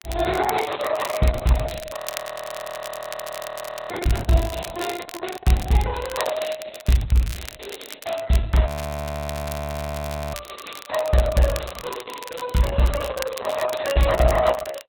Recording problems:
lossy codec; Opus, log-spectral distance 6 dB, nothing above 18.3 kHz
crackling; vinyl, SNR 13 dB
audio freezing; at 2 s for 2 s and at 8.5 s for 1.5 s

